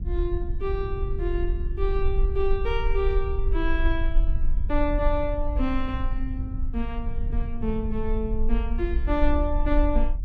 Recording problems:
rumble; below 46 Hz, strongest tone 18 Hz, SNR 0 dB
wind noise; below 110 Hz, SNR 7 dB

